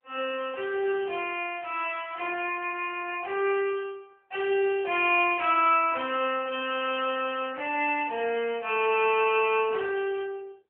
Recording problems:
telephone audio; 300 Hz to 3.2 kHz, AMR-NB

